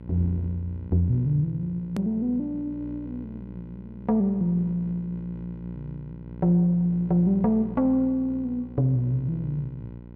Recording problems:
hum; 60 Hz, harmonics up to 600 Hz, SNR 15 dB
hard cut with a click; at 2 s

